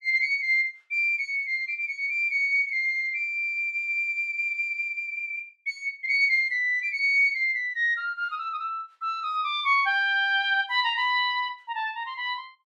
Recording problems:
none

